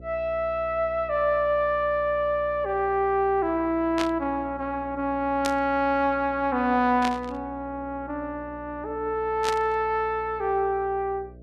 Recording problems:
hum; 60 Hz, harmonics up to 660 Hz, SNR 20 dB
burst of static; 4 times, first at 4 s; peak -1 dB vs average level

